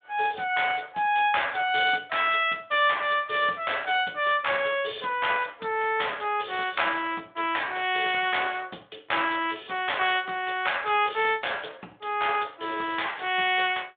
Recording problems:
phone line; 280 Hz to 3.6 kHz, Speex

